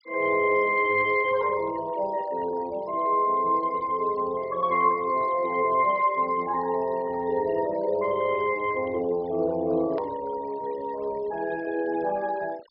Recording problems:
treble cut off; nothing above 5.5 kHz
denoising artefacts; signal-to-artefact ratio 22 dB
hard cut with a click; at 10 s

